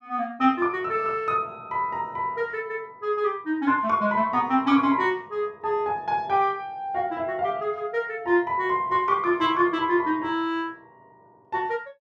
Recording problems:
none

